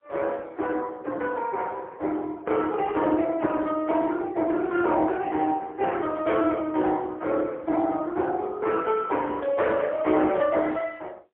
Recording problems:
telephone audio; 260 Hz to 3.4 kHz, AMR-NB, then MP3

